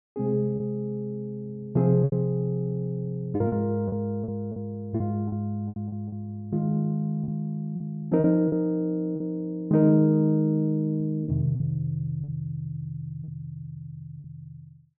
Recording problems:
lost packets; 7% of the sound replaced, filled with repeated pitch periods

